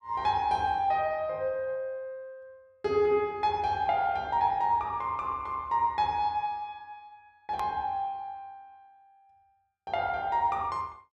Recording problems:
click at an edit; at 7.5 s

